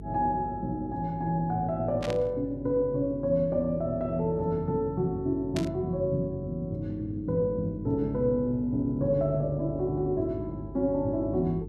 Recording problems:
hum; 50 Hz, harmonics up to 450 Hz, SNR 15 dB
burst of static; at 2 s and at 5.5 s; peak -4 dB vs average level

